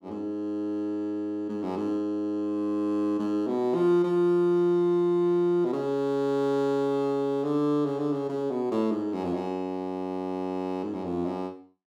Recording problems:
none

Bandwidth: 14.5 kHz